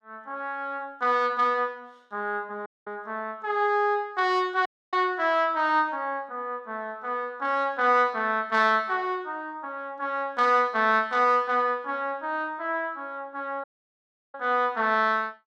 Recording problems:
dropout; at 2.5 s, at 4.5 s and at 14 s for 0.5 s

